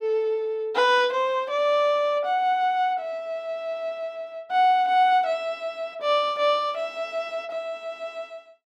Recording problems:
none

